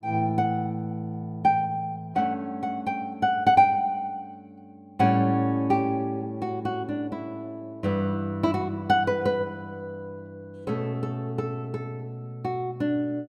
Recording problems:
none

